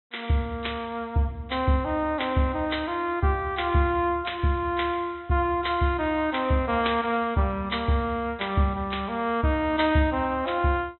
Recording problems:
low-pass filter; nothing above 4 kHz

